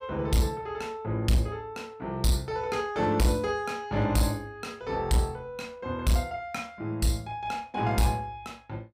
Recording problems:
distortion; hard clipping, signal-to-distortion ratio 12 dB

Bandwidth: 15.5 kHz